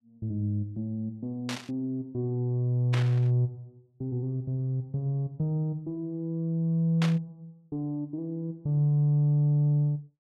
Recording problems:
burst of static; at 1.5 s, at 3 s and at 7 s; peak -2 dB vs average level

